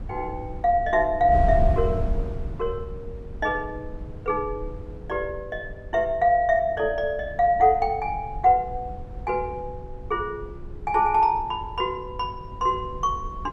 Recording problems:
wind on the microphone; below 100 Hz, SNR 11 dB

